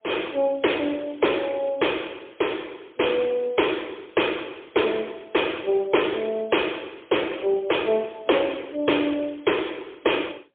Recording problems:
telephone audio; 320 Hz to 3.4 kHz, AMR-NB, then MP3

